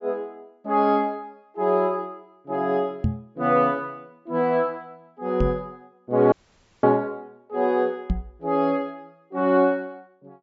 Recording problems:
low-pass filter; nothing above 8 kHz
microphone thump; at 3 s, at 5.5 s and at 8 s; peak +4 dB vs average level
dropout; at 6.5 s for 0.5 s

